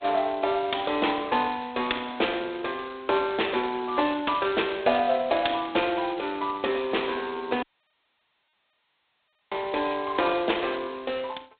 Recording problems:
telephone audio; 260 Hz to 3.7 kHz, G.726
audio cutting out; at 7.5 s for 2 s

